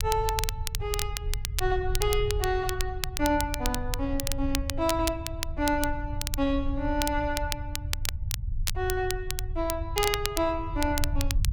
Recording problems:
rumble; below 80 Hz, SNR 5 dB
crackling; vinyl, SNR 5 dB

